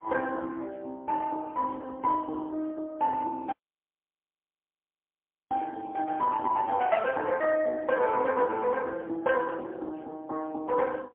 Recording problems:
telephone audio; 260 Hz to 3.2 kHz, AMR-NB, then MP3
dropout; at 3.5 s for 2 s

